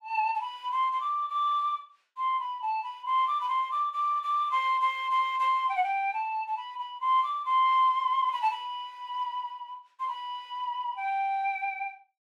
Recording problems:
none

